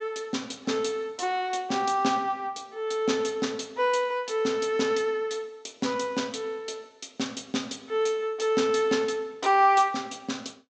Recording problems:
treble cut off; nothing above 8 kHz

